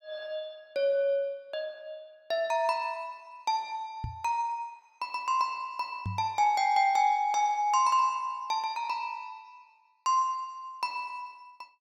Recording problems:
microphone thump; at 4 s and at 6 s; peak -2 dB vs average level

